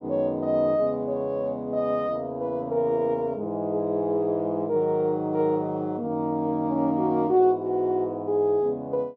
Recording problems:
none

